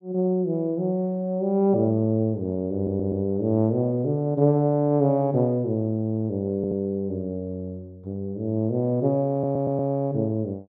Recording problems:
audio stuttering; at 3 s, at 6.5 s and at 9.5 s

